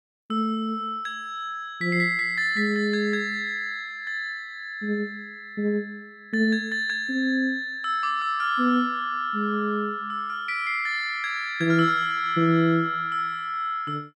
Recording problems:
none

